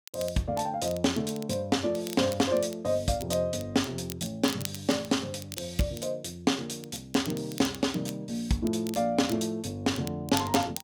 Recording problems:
crackle; vinyl, SNR 14 dB

